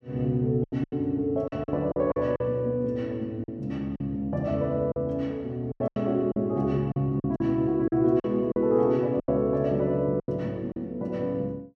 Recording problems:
lost packets; 10% of the sound replaced, filled with silence

